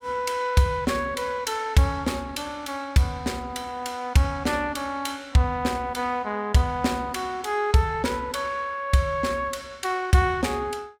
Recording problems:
none

